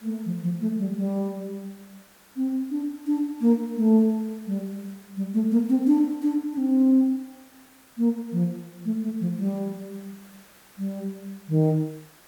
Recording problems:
hiss; SNR 27 dB

